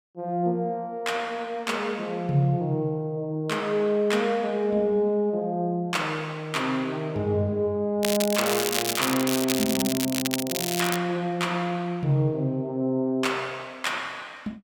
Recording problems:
crackling; from 8 to 11 s; loose cable, SNR 2 dB

